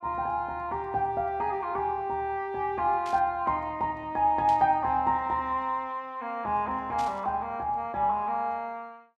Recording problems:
static burst; at 3 s, at 4.5 s and at 7 s; peak -11 dB vs average level

